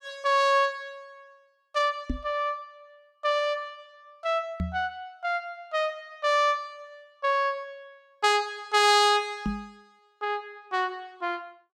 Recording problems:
microphone bump; at 2 s, at 4.5 s and at 9.5 s; peak 0 dB vs average level

